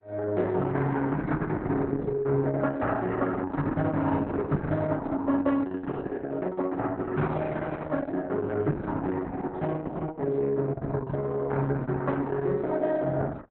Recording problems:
lossy compression; Opus, log-spectral distance 3 dB, nothing above 3.9 kHz

